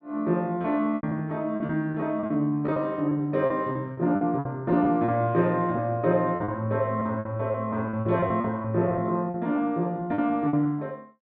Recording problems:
lost packets; 12% of the sound replaced, filled with repeated pitch periods

